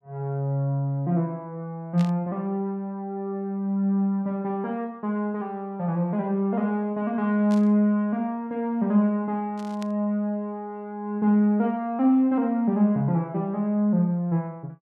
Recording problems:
burst of static; at 2 s, at 7.5 s and at 9.5 s; peak -11 dB vs average level

